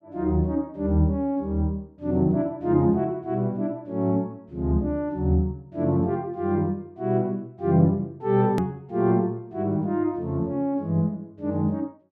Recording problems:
hard cut with a click; at 8.5 s

